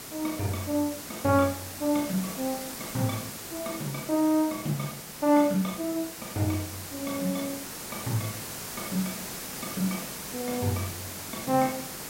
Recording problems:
hiss; slope -2 dB per octave, SNR 7 dB

